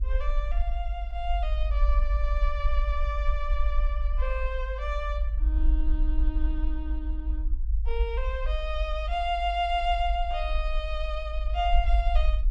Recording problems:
rumble; below 52 Hz, SNR -3 dB

